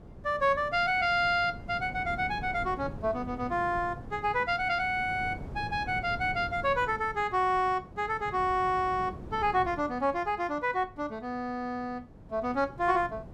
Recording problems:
wind noise; below 300 Hz, SNR 15 dB

